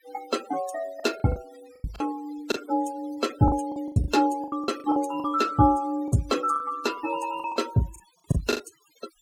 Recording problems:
noise reduction artefacts; signal-to-artefact ratio 17 dB
lost packets; 12% of the sound replaced, filled with the last packet

